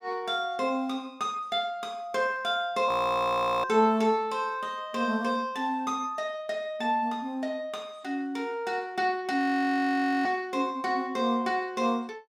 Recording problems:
audio freezing; at 3 s for 1 s and at 9.5 s for 1 s

